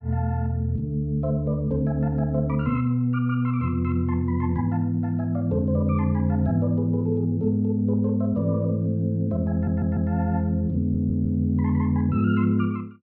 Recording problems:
audio stuttering; at 9.5 s and at 11 s

